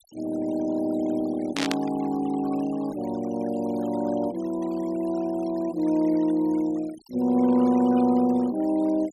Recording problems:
noise reduction artefacts; signal-to-artefact ratio 21 dB
static burst; at 1.5 s; peak 0 dB vs average level

